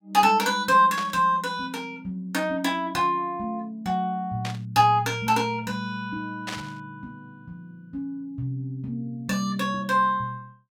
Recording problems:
burst of static; at 1 s, at 4.5 s and at 6.5 s; peak -4 dB vs average level

